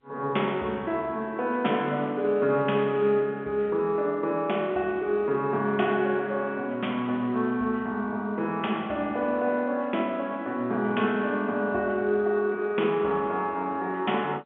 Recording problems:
telephone audio; 220 Hz to 3.5 kHz, G.711

